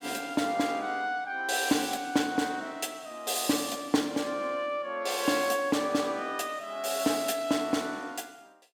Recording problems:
none

